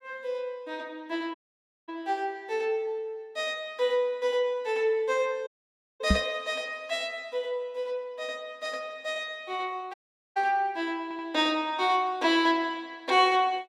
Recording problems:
audio cutting out; at 1.5 s for 0.5 s, at 5.5 s for 0.5 s and at 10 s
microphone bump; at 6 s; peak +8 dB vs average level
audio stuttering; at 11 s

